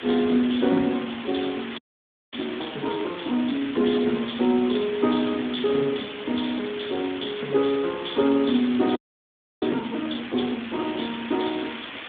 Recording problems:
phone line; 190 Hz to 3.6 kHz, Speex
background hiss; SNR 12 dB
wind on the microphone; below 550 Hz, SNR 24 dB
frozen audio; at 2 s for 0.5 s and at 9 s for 0.5 s

